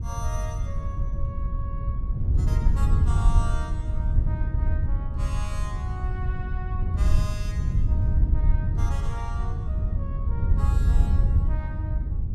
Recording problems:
wind on the microphone; below 88 Hz, SNR -14 dB

